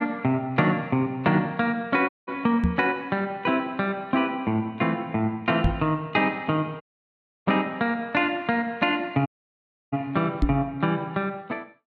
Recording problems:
audio cutting out; at 2 s, at 7 s for 0.5 s and at 9.5 s for 0.5 s
knock on the microphone; at 2.5 s, at 5.5 s and at 10 s; peak +6 dB vs average level

